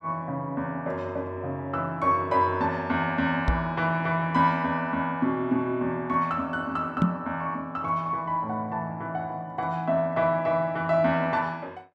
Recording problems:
microphone thump; at 3.5 s and at 7 s; peak +7 dB vs average level

